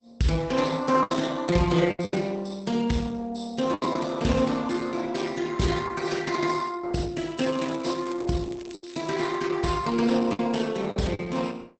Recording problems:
codec artefacts; Opus, log-spectral distance 5 dB, nothing above 8.2 kHz
lost packets; 5% of the sound replaced, filled with the last packet
crackling; from 7 to 9.5 s; loose cable, SNR 22 dB

